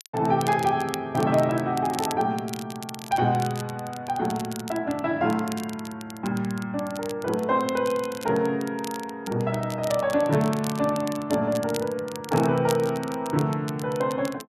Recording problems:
crackle; vinyl, SNR 15 dB

